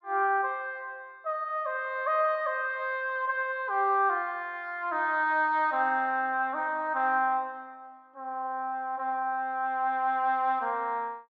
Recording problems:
none

